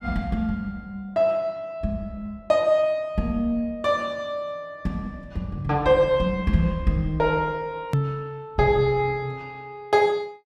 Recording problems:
hard cut with a click; at 8 s

